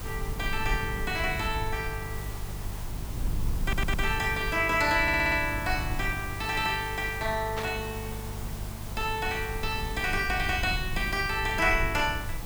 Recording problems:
hum; 50 Hz, harmonics up to 350 Hz, SNR 13 dB
background hiss; SNR 14 dB
rumble; below 78 Hz, SNR 10 dB
audio stuttering; at 3.5 s and at 5 s
burst of static; at 7.5 s; peak -4 dB vs average level

